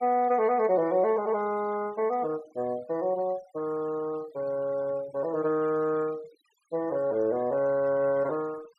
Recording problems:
denoising artefacts; signal-to-artefact ratio 23 dB

